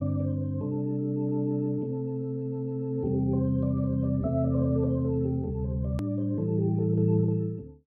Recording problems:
hard cut with a click; at 6 s

